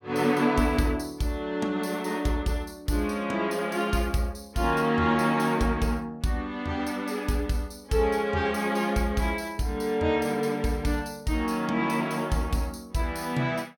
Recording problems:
none

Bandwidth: 17.5 kHz